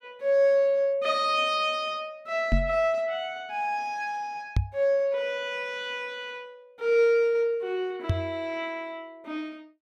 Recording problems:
microphone bump; at 2.5 s, at 4.5 s and at 8 s; peak +5 dB vs average level

